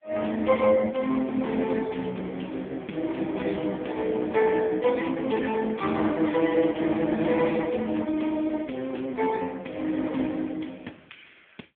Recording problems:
phone line; 220 Hz to 3 kHz, AMR-NB

